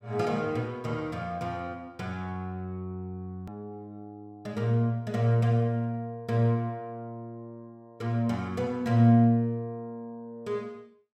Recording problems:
edit click; at 3.5 s

